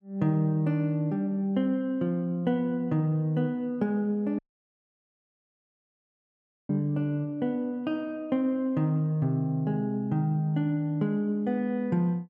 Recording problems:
dropout; at 4.5 s for 2.5 s

